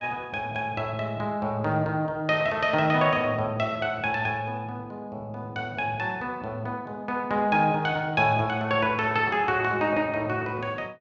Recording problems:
none

